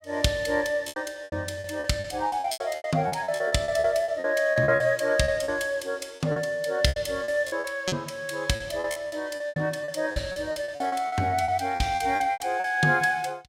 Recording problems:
packet loss; 17% of the sound replaced, filled with repeated pitch periods

